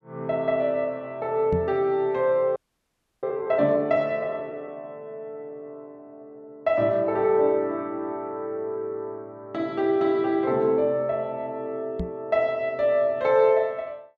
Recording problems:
microphone bump; at 1.5 s and at 12 s; peak 0 dB vs average level
audio freezing; at 2.5 s for 0.5 s

